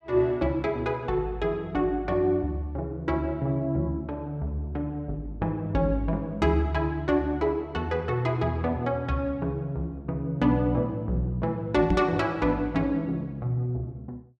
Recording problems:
microphone bump; at 12 s; peak +4 dB vs average level

